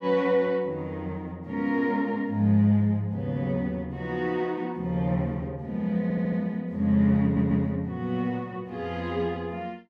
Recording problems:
audio stuttering; at 6 s and at 7 s

